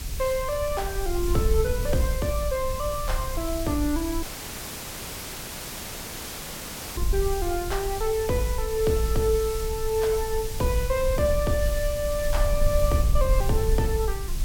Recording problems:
background hiss; slope 0 dB per octave, SNR 10 dB
rumble; below 64 Hz, SNR 5 dB
dropout; at 4 s for 2.5 s

